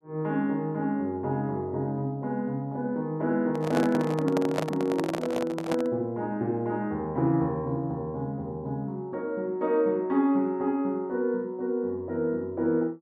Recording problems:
microphone handling noise; from 3.5 to 6 s; peak +3 dB vs average level

